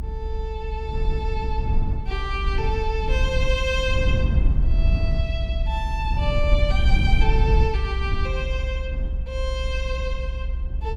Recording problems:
low-frequency rumble; below 68 Hz, SNR -4 dB

